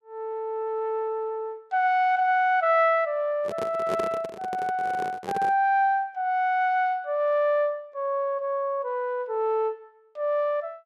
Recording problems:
microphone handling noise; from 3.5 to 5.5 s; peak -3 dB vs average level

